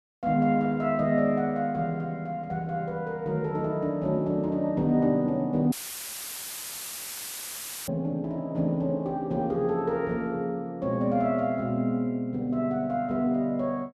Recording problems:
audio cutting out; at 5.5 s for 2 s; filled with static

